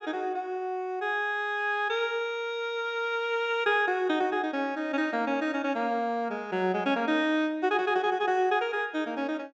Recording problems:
treble cut off; nothing above 8 kHz

